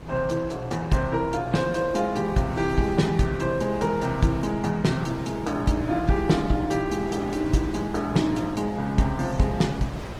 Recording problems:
lossy codec; Opus, log-spectral distance 3 dB, nothing above 15.5 kHz
hum; 60 Hz, harmonics up to 480 Hz, SNR 19 dB
wind noise; below 930 Hz, SNR 15 dB

